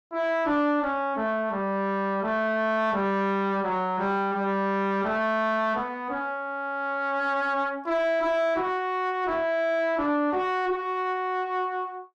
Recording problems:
distortion; soft clipping, signal-to-distortion ratio 11 dB

